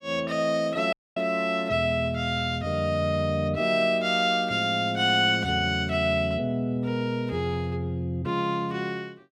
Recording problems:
dropout; at 1 s

